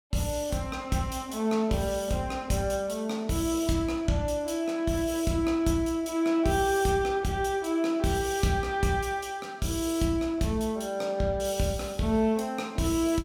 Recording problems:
none

